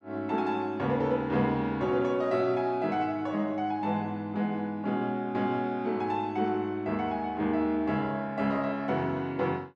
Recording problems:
none

